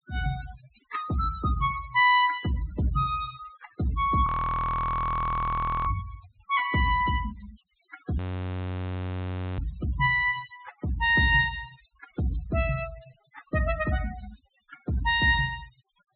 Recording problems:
treble missing; nothing above 4 kHz
denoising artefacts; signal-to-artefact ratio 18 dB
audio freezing; at 4.5 s for 1.5 s and at 8 s for 1.5 s

